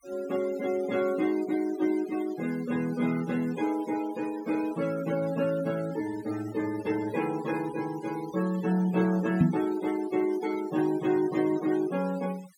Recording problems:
denoising artefacts; signal-to-artefact ratio 17 dB
knock on the microphone; at 9.5 s; peak +9 dB vs average level

